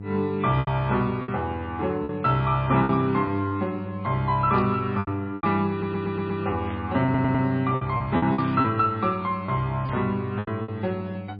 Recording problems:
lossy compression; MP3, log-spectral distance 2 dB, nothing above 4.1 kHz
electrical hum; 50 Hz, harmonics up to 500 Hz, SNR 11 dB
packet loss; 8% of the sound replaced, filled with repeated pitch periods
burst of static; 4 times, first at 4.5 s; peak -10 dB vs average level
stutter; at 5.5 s and at 7 s

